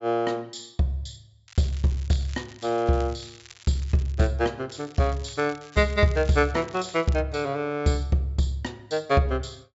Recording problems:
low-pass filter; nothing above 8 kHz
crackling; from 1.5 to 4.5 s and from 4.5 to 7 s; loose cable, SNR 22 dB

